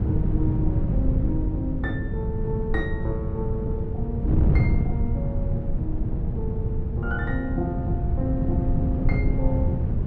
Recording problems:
wind on the microphone; below 150 Hz, SNR -6 dB

